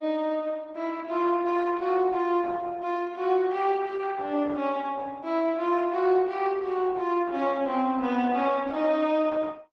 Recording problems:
lossy codec; Opus, log-spectral distance 3 dB

